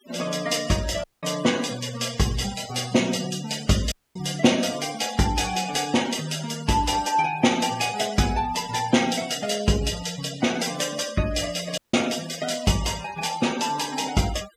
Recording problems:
noise reduction artefacts; signal-to-artefact ratio 14 dB
dropout; at 1 s, at 4 s and at 12 s

